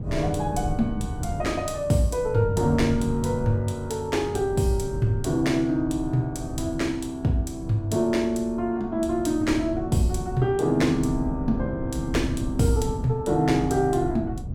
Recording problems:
wind noise; below 150 Hz, SNR 9 dB

